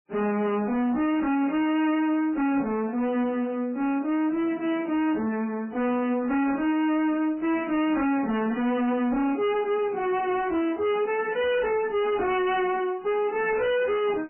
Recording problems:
lossy codec; MP3, log-spectral distance 3 dB, nothing above 2.9 kHz
distortion; hard clipping, uneven, signal-to-distortion ratio 7 dB

